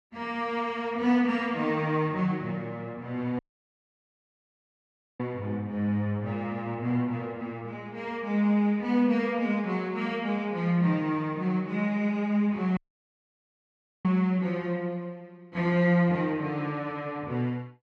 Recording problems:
audio cutting out; at 3.5 s for 2 s and at 13 s for 1.5 s

